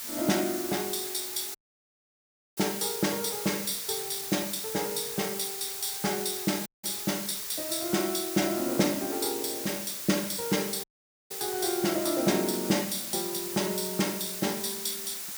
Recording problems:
hiss; slope +2 dB per octave, SNR 4 dB
dropout; at 1.5 s for 1 s, at 6.5 s and at 11 s

